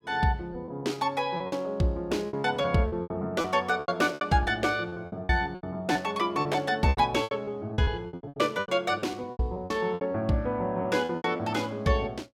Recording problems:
packet loss; 15% of the sound replaced, filled with repeated pitch periods

